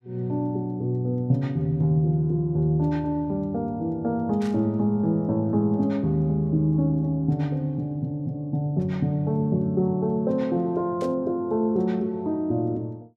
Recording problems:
static burst; at 4.5 s and at 11 s; peak -16 dB vs average level

